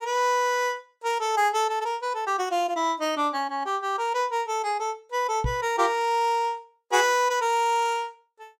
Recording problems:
knock on the microphone; at 5.5 s; peak +1 dB vs average level

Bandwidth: 16.5 kHz